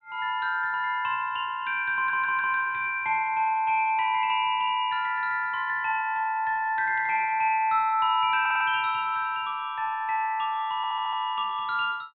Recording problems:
treble cut off; nothing above 4 kHz
stutter; at 2 s, at 8.5 s and at 11 s

